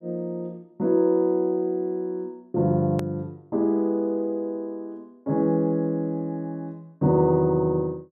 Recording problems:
edit click; at 3 s

